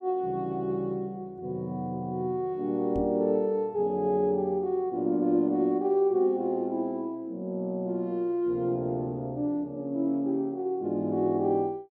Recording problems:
knock on the microphone; at 3 s; peak 0 dB vs average level

